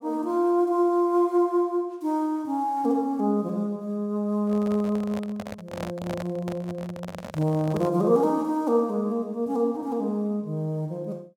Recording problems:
handling noise; from 4.5 to 8 s; peak -5 dB vs average level

